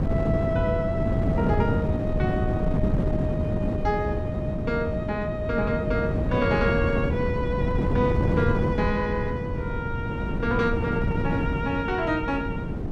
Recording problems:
wind on the microphone; below 260 Hz, SNR -1 dB

